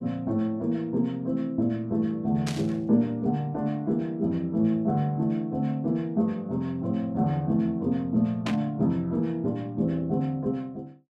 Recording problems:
burst of static; at 2.5 s and at 8.5 s; peak -3 dB vs average level

